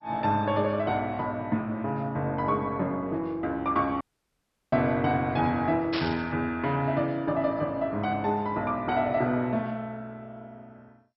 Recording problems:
lossy codec; MP2, log-spectral distance 2 dB, nothing above 5.5 kHz
dropout; at 4 s for 0.5 s
burst of static; at 6 s; peak -1 dB vs average level

